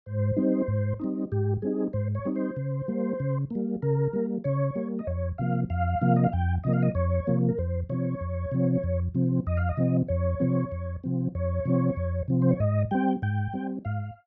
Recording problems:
none

